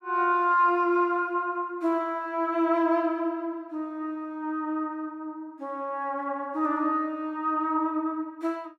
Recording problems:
none

